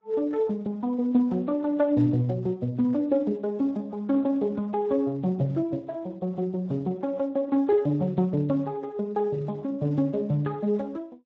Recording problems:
codec artefacts; AAC, then Speex, log-spectral distance 2 dB

